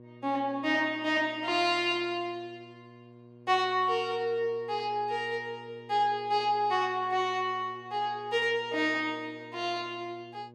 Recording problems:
hum; 60 Hz, harmonics up to 1.1 kHz, SNR 22 dB

